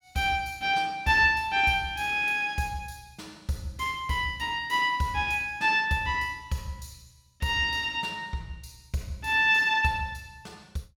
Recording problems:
none

